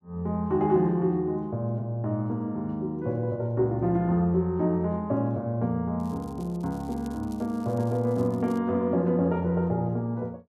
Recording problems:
crackle; from 6 to 8.5 s; loose cable, SNR 28 dB

